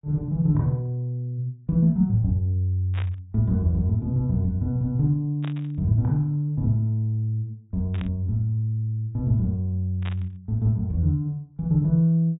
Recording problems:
treble missing; nothing above 4 kHz
burst of static; 4 times, first at 3 s; peak -11 dB vs average level

